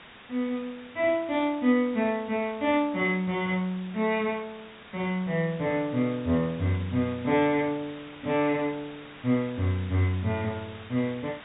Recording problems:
treble missing; nothing above 4 kHz
background hiss; SNR 19 dB

